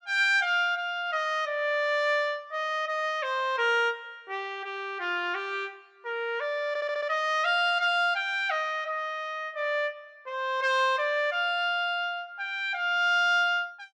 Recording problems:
audio stuttering; at 6.5 s

